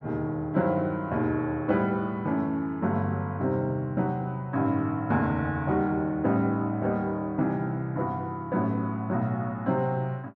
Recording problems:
none

